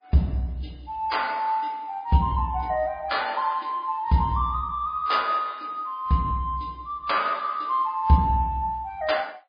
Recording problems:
codec artefacts; MP3, log-spectral distance 2 dB, nothing above 5 kHz

